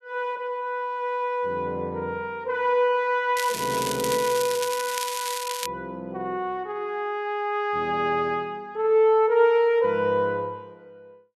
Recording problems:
crackling; from 3.5 to 5.5 s; loose cable, SNR 7 dB

